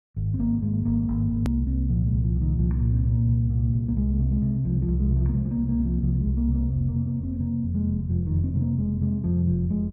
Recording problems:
edit click; at 1.5 s

